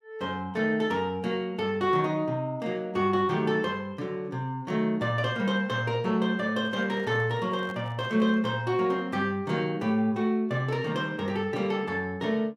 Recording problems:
handling noise; from 6.5 to 8.5 s; peak -12 dB vs average level

